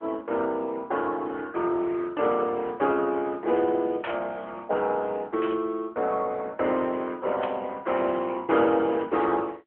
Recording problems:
phone line; 300 Hz to 3.3 kHz, AMR-NB
static burst; at 4 s, at 5.5 s and at 7.5 s; peak -3 dB vs average level

